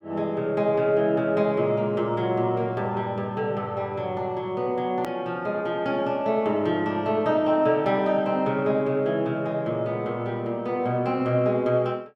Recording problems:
click at an edit; at 5 s

